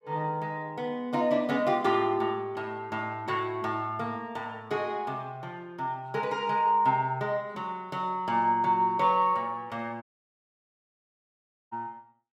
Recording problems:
dropout; at 10 s for 1.5 s

